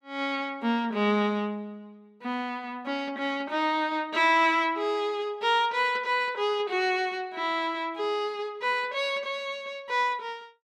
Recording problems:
none

